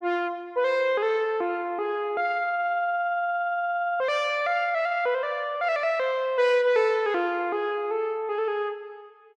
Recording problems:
none

